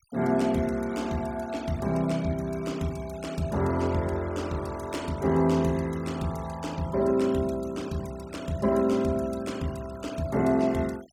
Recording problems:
noise reduction artefacts; signal-to-artefact ratio 20 dB

